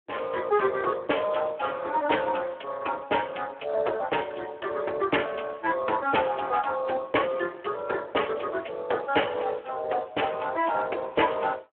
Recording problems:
telephone audio; 340 Hz to 3.2 kHz, Speex

